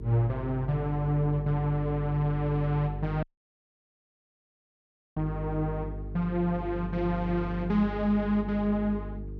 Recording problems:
hum; 50 Hz, harmonics up to 450 Hz, SNR 9 dB
wind noise; below 820 Hz, SNR 27 dB
audio cutting out; at 3 s for 2 s

